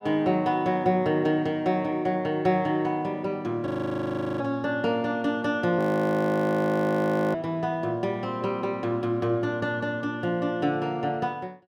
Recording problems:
frozen audio; at 3.5 s for 0.5 s and at 6 s for 1.5 s

